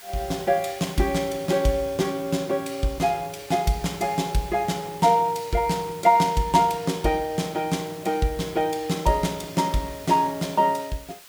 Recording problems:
background hiss; slope +1 dB per octave, SNR 20 dB

